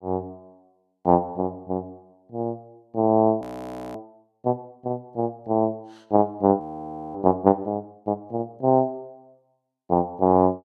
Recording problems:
frozen audio; at 3.5 s for 0.5 s and at 6.5 s for 0.5 s

